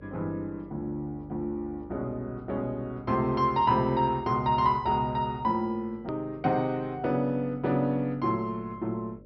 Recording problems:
treble missing; nothing above 5.5 kHz
electrical hum; 50 Hz, harmonics up to 600 Hz, SNR 23 dB
edit click; at 6 s

